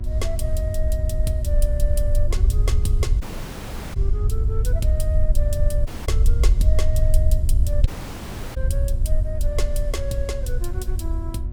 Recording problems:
electrical hum; 60 Hz, harmonics up to 1.3 kHz, SNR 11 dB
low-frequency rumble; below 68 Hz, SNR -9 dB
audio cutting out; at 3 s for 0.5 s, at 6 s and at 8 s for 0.5 s

